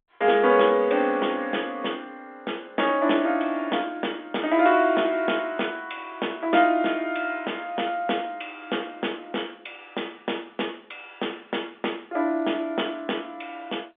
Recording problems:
phone line; 280 Hz to 3.6 kHz, G.711

